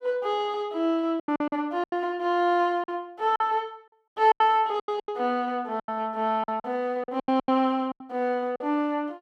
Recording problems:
lost packets; 12% of the sound replaced, filled with silence

